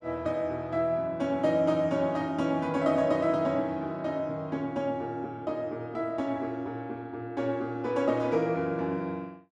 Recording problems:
none

